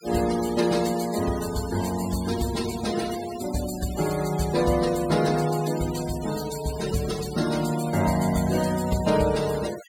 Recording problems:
noise reduction artefacts; signal-to-artefact ratio 12 dB

